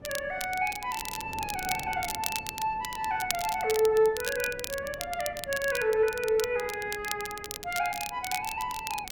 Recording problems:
wind on the microphone; below 500 Hz, SNR 19 dB
crackling; vinyl, SNR 8 dB

